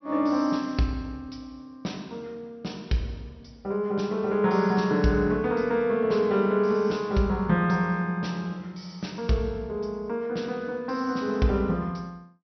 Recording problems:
treble missing; nothing above 5.9 kHz

